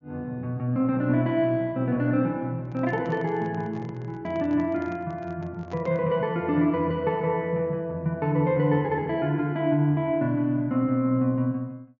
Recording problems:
treble missing; nothing above 6.9 kHz
handling noise; from 2.5 to 6 s; peak -12 dB vs average level

